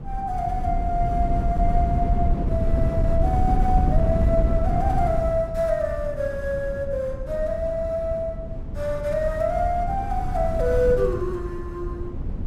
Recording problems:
wind noise; below 120 Hz, SNR 1 dB

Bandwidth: 16 kHz